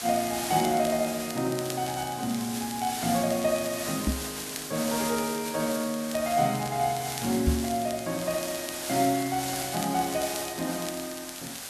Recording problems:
background hiss; slope 0 dB per octave, SNR 6 dB
crackle; vinyl, SNR 16 dB
knock on the microphone; at 4 s and at 7.5 s; peak +7 dB vs average level

